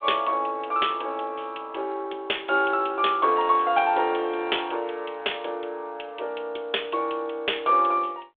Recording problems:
telephone audio; 340 Hz to 3.6 kHz, G.726

